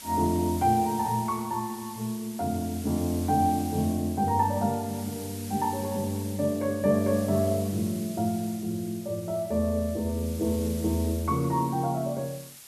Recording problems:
hiss; slope +2 dB per octave, SNR 15 dB

